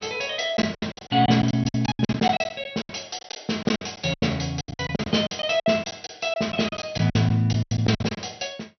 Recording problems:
low-pass filter; nothing above 6 kHz
lost packets; 18% of the sound replaced, filled with silence

